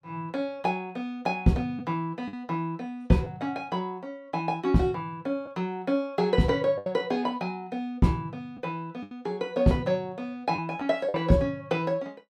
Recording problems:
lost packets; 3% of the sound replaced, filled with the last packet

